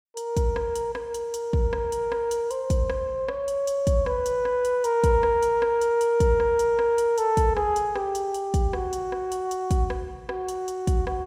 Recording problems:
none

